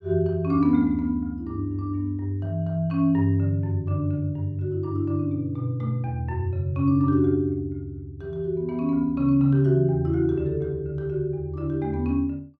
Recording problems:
none

